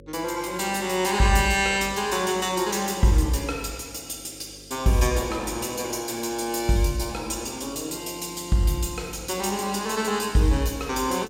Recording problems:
electrical hum; 50 Hz, harmonics up to 550 Hz, SNR 25 dB

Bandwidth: 16 kHz